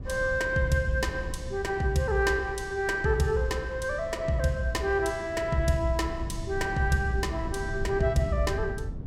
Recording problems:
low-frequency rumble; below 130 Hz, SNR 11 dB

